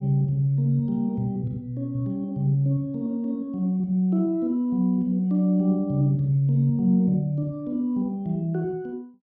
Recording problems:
none

